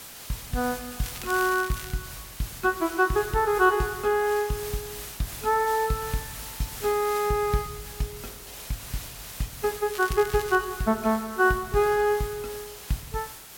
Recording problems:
background hiss; slope -1 dB per octave, SNR 12 dB
crackle; at 1 s and at 10 s; loose cable, SNR 15 dB

